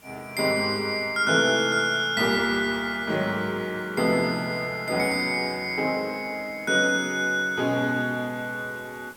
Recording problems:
background hiss; slope -3 dB per octave, SNR 27 dB

